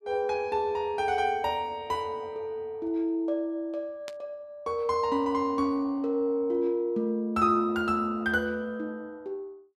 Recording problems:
static burst; at 4 s; peak -9 dB vs average level

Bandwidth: 14.5 kHz